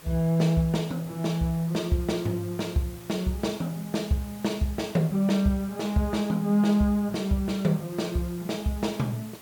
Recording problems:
background hiss; slope -3 dB per octave, SNR 20 dB

